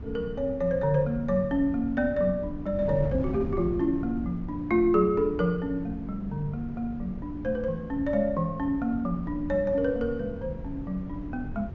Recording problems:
treble cut off; nothing above 7.2 kHz
wind noise; below 180 Hz, SNR 11 dB

